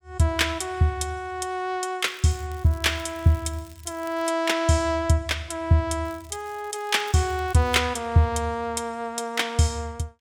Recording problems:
crackling; from 2 to 4.5 s and from 6 to 7.5 s; loose cable, SNR 26 dB

